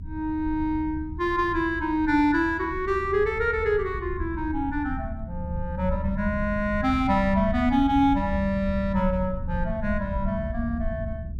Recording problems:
rumble; below 98 Hz, SNR 9 dB

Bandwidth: 14.5 kHz